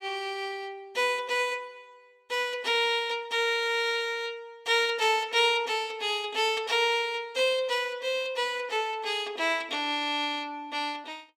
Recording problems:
none

